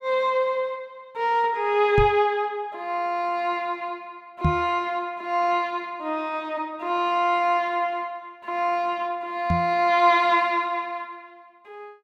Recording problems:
microphone thump; at 2 s, at 4.5 s and at 9.5 s; peak +5 dB vs average level

